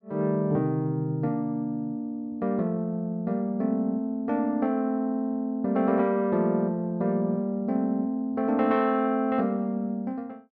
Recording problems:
none

